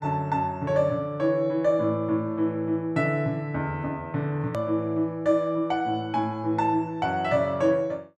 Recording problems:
click at an edit; at 4.5 s

